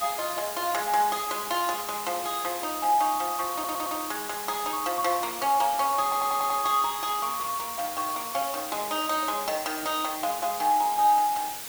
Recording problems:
hiss; slope 0 dB per octave, SNR 7 dB
stutter; at 3.5 s and at 6 s

